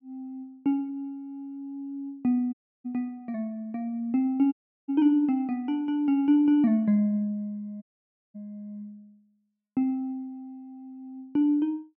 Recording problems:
dropout; at 2.5 s, at 4.5 s and at 8 s for 0.5 s

